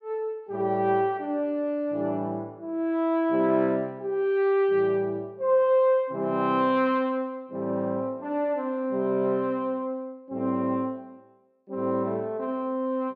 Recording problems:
none

